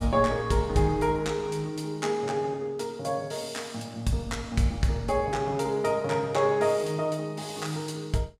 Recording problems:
none

